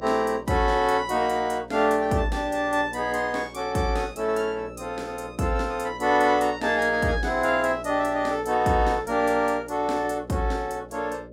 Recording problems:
hum; 60 Hz, harmonics up to 600 Hz, SNR 18 dB

